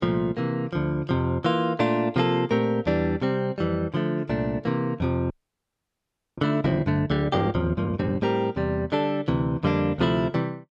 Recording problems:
audio freezing; at 5.5 s for 1 s

